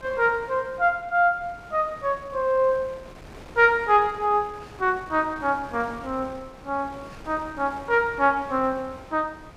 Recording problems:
wind noise; below 1.2 kHz, SNR 20 dB

